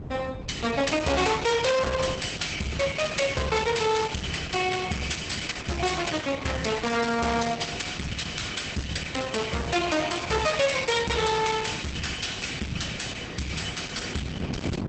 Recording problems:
lossy compression; Opus, log-spectral distance 5 dB, nothing above 8 kHz
distorted audio; hard clipping, signal-to-distortion ratio 7 dB
wind on the microphone; below 320 Hz, SNR 12 dB

